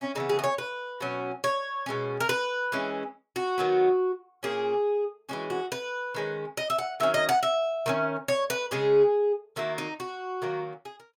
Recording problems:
none

